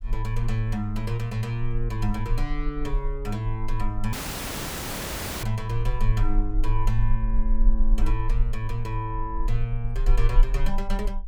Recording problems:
rumble; below 36 Hz, strongest tone 20 Hz, SNR 0 dB
audio cutting out; at 4 s for 1.5 s

